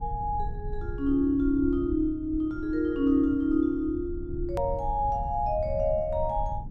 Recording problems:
rumble; below 86 Hz, SNR 11 dB
edit click; at 4.5 s

